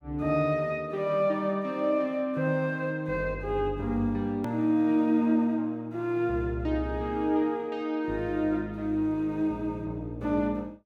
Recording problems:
hard cut with a click; at 4.5 s

